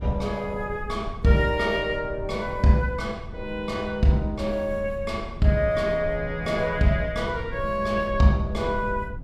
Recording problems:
rumble; below 120 Hz, SNR 13 dB

